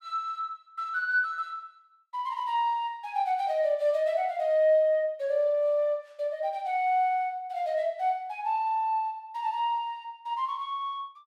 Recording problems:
none

